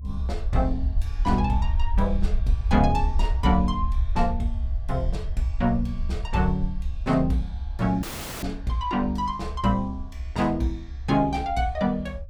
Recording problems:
low-frequency rumble; below 66 Hz, SNR 4 dB
audio cutting out; at 8 s

